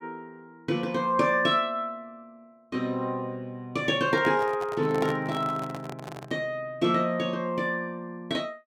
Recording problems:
microphone handling noise; from 4 to 6.5 s; peak -1 dB vs average level

